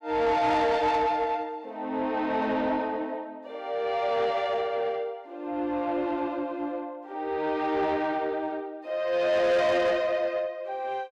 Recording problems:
distortion; soft clipping, signal-to-distortion ratio 11 dB

